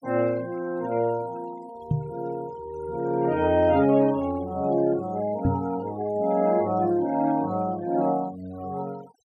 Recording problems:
denoising artefacts; signal-to-artefact ratio 23 dB
knock on the microphone; at 2 s and at 5.5 s; peak +4 dB vs average level

